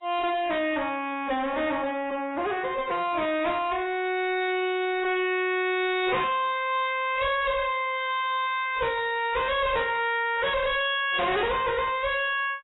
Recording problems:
lossy compression; AAC, log-spectral distance 4 dB, nothing above 3.4 kHz
distortion; soft clipping, signal-to-distortion ratio 6 dB

